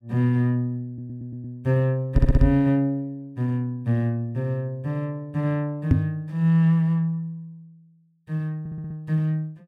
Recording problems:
stutter; at 1 s, at 2 s and at 8.5 s
microphone bump; at 2 s and at 6 s; peak +10 dB vs average level

